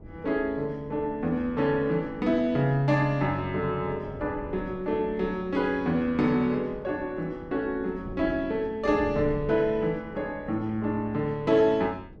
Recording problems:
wind on the microphone; below 270 Hz, SNR 18 dB

